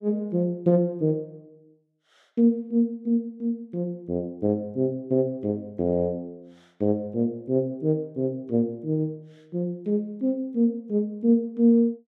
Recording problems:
none

